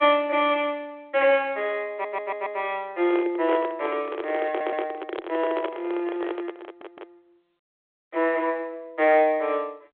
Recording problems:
telephone audio; 300 Hz to 3.5 kHz, G.726
audio stuttering; at 2 s, at 4.5 s and at 6.5 s
microphone handling noise; from 3 to 7 s; peak 0 dB vs average level

